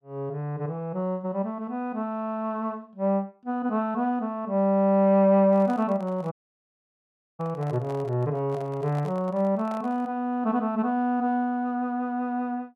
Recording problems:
microphone handling noise; from 5.5 to 10 s; peak -12 dB vs average level
dropout; at 6.5 s for 1 s

